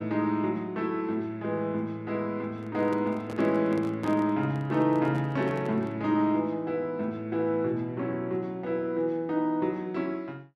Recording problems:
microphone handling noise; from 2.5 to 6 s; peak -5 dB vs average level

